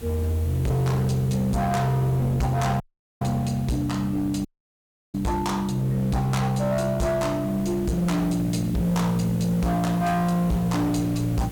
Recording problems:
distortion; hard clipping, signal-to-distortion ratio 8 dB
electrical hum; 50 Hz, harmonics up to 450 Hz, SNR 19 dB
background hiss; slope -3 dB per octave, SNR 22 dB
wind on the microphone; below 460 Hz, SNR 21 dB
dropout; at 3 s and at 4.5 s for 0.5 s

